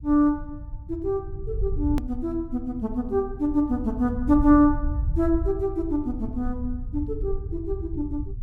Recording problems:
rumble; below 76 Hz, SNR 8 dB
edit click; at 2 s

